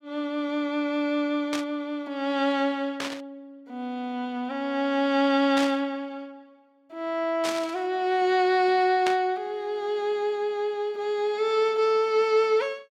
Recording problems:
static burst; 5 times, first at 1.5 s; peak -1 dB vs average level

